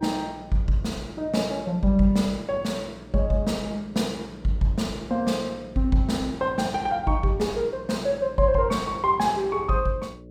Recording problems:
hum; 60 Hz, harmonics up to 600 Hz, SNR 20 dB

